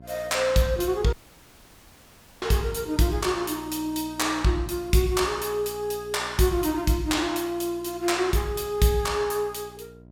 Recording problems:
hum; 60 Hz, harmonics up to 960 Hz, SNR 22 dB
audio cutting out; at 1 s for 1.5 s

